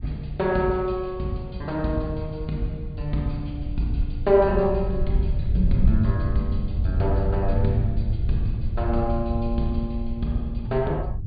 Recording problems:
treble cut off; nothing above 4.8 kHz
wind noise; below 82 Hz, SNR 3 dB

